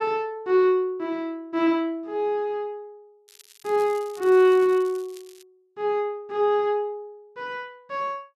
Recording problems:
crackling; from 3.5 to 5.5 s; loose cable, SNR 25 dB

